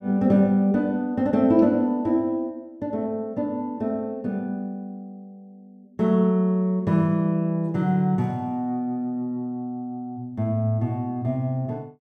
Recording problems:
none

